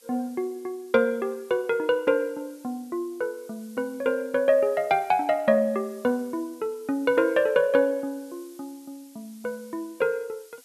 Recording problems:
hiss; slope +3 dB per octave, SNR 27 dB

